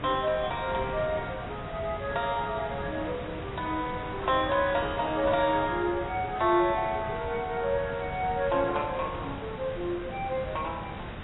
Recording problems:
codec artefacts; AAC, log-spectral distance 6 dB, nothing above 3.3 kHz
background hiss; SNR 10 dB
wind noise; below 880 Hz, SNR 20 dB

